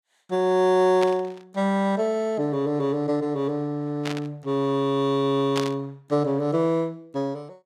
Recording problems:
burst of static; at 1 s, at 4 s and at 5.5 s; peak -2 dB vs average level

